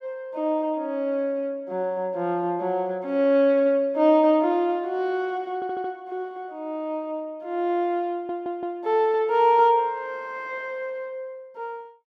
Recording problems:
stutter; at 5.5 s and at 8 s

